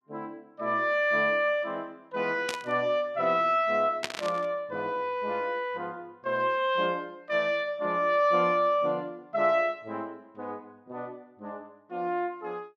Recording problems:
static burst; at 2.5 s and at 4 s; peak +1 dB vs average level

